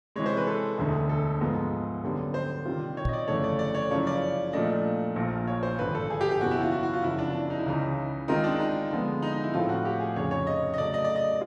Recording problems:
microphone bump; at 3 s; peak +2 dB vs average level

